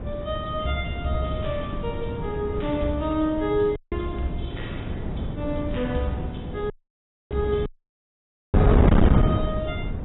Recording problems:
codec artefacts; AAC, log-spectral distance 3 dB, nothing above 3.6 kHz
distortion; hard clipping, signal-to-distortion ratio 11 dB
wind on the microphone; below 270 Hz, SNR -2 dB
audio cutting out; at 4 s, at 6.5 s for 0.5 s and at 7.5 s for 1 s

